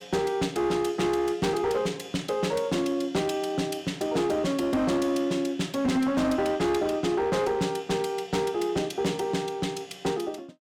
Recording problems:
distortion; hard clipping, uneven, signal-to-distortion ratio 12 dB

